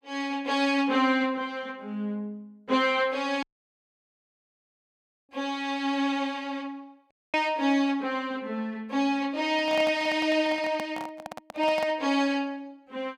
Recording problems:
dropout; at 3.5 s for 2 s and at 7 s
handling noise; from 9.5 to 12 s; peak -4 dB vs average level

